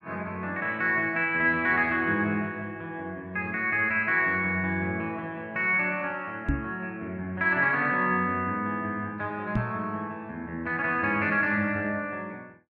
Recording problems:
microphone thump; at 6.5 s and at 9.5 s; peak +3 dB vs average level

